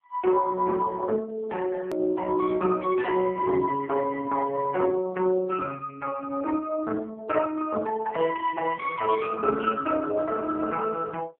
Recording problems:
telephone audio; 240 Hz to 2.6 kHz, AMR-NB
edit click; at 2 s

